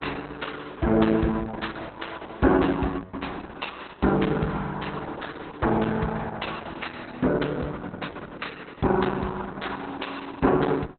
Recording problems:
codec artefacts; Opus, log-spectral distance 7 dB, nothing above 4.1 kHz

